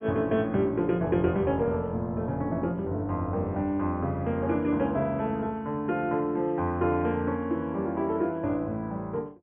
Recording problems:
treble missing; nothing above 3.3 kHz

